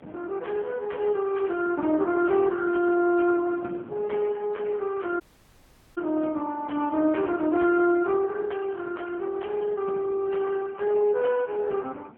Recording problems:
telephone audio; 190 Hz to 3.3 kHz, AMR-NB
wind noise; below 460 Hz, SNR 22 dB
dropout; at 5 s for 1 s

